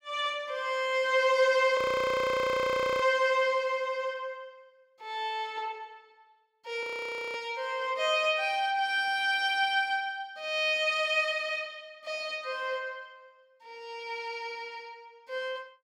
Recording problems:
audio freezing; at 2 s for 1.5 s and at 7 s for 0.5 s

